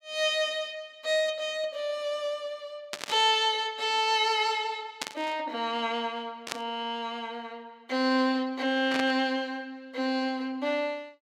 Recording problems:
static burst; 4 times, first at 3 s; peak +1 dB vs average level

